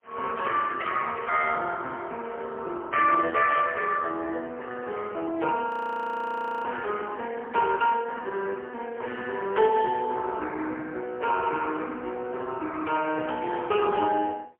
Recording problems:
telephone audio; 260 Hz to 2.9 kHz, AMR-NB, then MP3
frozen audio; at 5.5 s for 1 s

